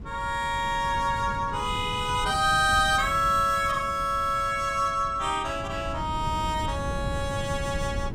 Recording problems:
wind on the microphone; below 180 Hz, SNR 11 dB

